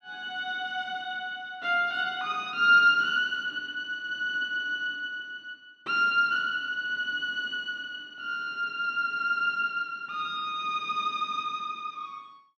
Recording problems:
none

